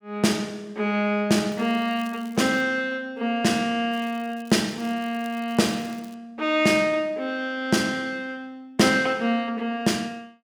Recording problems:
crackling; from 1.5 to 2.5 s and from 4 to 6 s; loose cable, SNR 26 dB

